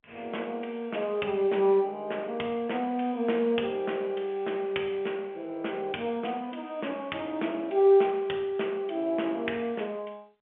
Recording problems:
telephone audio; 260 Hz to 3.3 kHz, G.711

